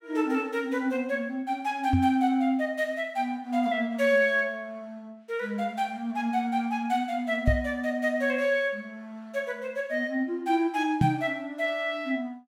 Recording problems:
knock on the microphone; at 2 s, at 7.5 s and at 11 s; peak +7 dB vs average level

